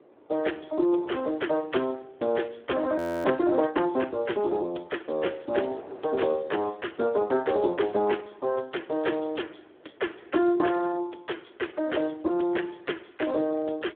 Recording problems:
telephone audio; 280 Hz to 3.5 kHz, Speex
wind noise; below 680 Hz, SNR 25 dB
frozen audio; at 3 s

